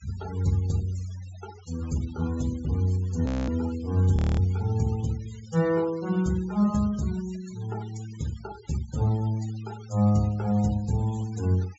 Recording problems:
treble cut off; nothing above 8 kHz
denoising artefacts; signal-to-artefact ratio 21 dB
frozen audio; at 3.5 s and at 4 s

